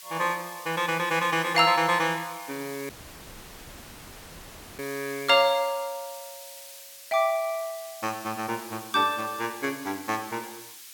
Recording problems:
background hiss; slope +5 dB per octave, SNR 16 dB
audio cutting out; at 3 s for 2 s

